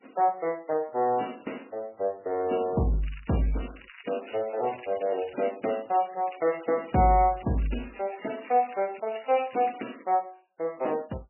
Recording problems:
codec artefacts; MP3, then MP3, log-spectral distance 11 dB, nothing above 2.7 kHz
crackling; from 3 to 5.5 s and from 6 to 10 s; loose cable, SNR 20 dB

